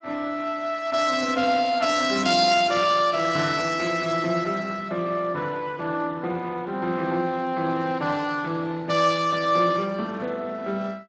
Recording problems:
codec artefacts; Speex, log-spectral distance 4 dB, nothing above 7.3 kHz

